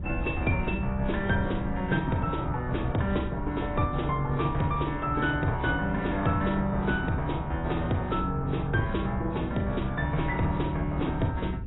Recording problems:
lossy compression; AAC, log-spectral distance 3 dB, nothing above 3.8 kHz
rumble; below 86 Hz, SNR 10 dB
wind noise; below 150 Hz, SNR 13 dB

